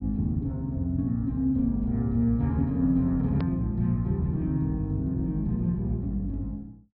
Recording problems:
treble cut off; nothing above 5.5 kHz
click at an edit; at 3.5 s

